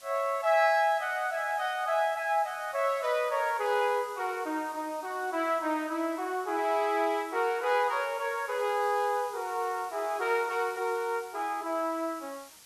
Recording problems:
background hiss; slope +1 dB per octave, SNR 21 dB

